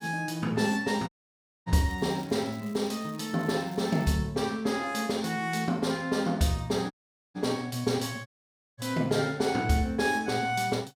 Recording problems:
audio cutting out; at 1 s for 0.5 s, at 7 s and at 8.5 s for 0.5 s
crackle; from 1.5 to 4 s; loose cable, SNR 24 dB

